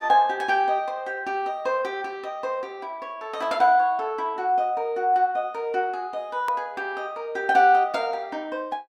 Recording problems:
click at an edit; at 6.5 s

